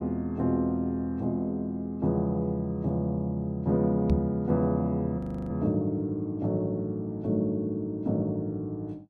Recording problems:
microphone thump; at 4 s; peak +5 dB vs average level
frozen audio; at 5 s

